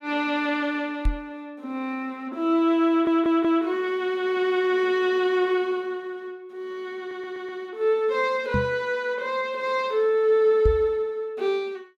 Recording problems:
microphone bump; at 1 s, at 8.5 s and at 11 s; peak +3 dB vs average level
stutter; at 3 s and at 7 s

